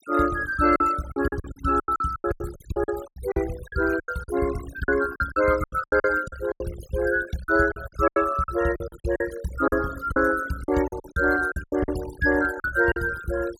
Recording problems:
noise reduction artefacts; signal-to-artefact ratio 15 dB
packet loss; 16% of the sound replaced, filled with silence

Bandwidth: 16.5 kHz